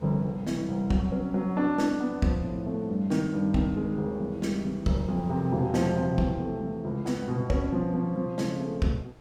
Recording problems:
wind noise; below 580 Hz, SNR 24 dB

